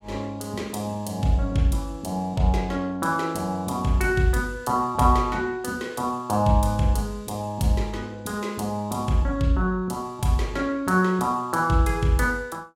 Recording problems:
none

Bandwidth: 16 kHz